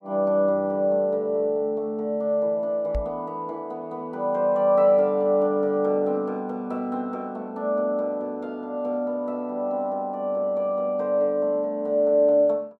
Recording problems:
microphone thump; at 3 s; peak -2 dB vs average level

